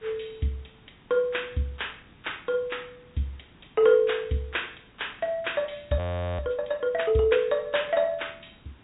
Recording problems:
low-pass filter; nothing above 4 kHz
hiss; SNR 27 dB
audio freezing; at 6 s

